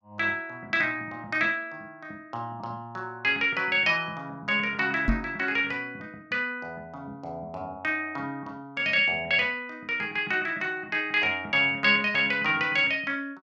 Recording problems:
knock on the microphone; at 5 s; peak +4 dB vs average level

